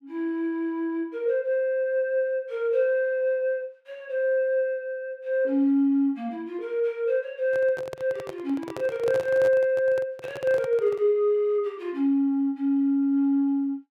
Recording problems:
handling noise; from 7.5 to 11 s; peak -5 dB vs average level

